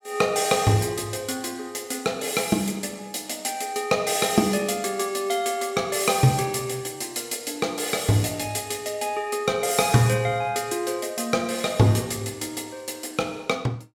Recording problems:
none

